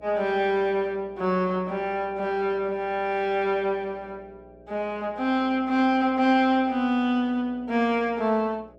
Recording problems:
electrical hum; 60 Hz, harmonics up to 660 Hz, SNR 25 dB

